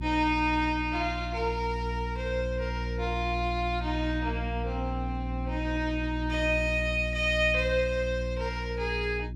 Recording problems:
hum; 60 Hz, harmonics up to 360 Hz, SNR 5 dB

